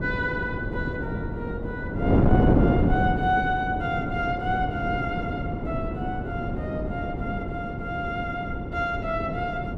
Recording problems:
wind on the microphone; below 370 Hz, SNR -2 dB

